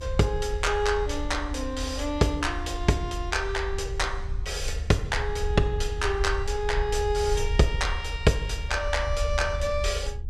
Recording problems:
rumble; below 72 Hz, SNR 6 dB

